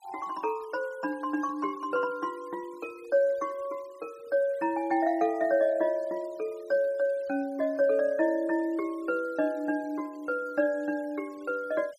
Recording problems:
denoising artefacts; signal-to-artefact ratio 27 dB

